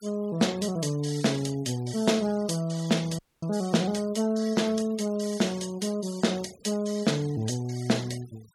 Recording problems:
denoising artefacts; signal-to-artefact ratio 20 dB
dropout; at 3 s

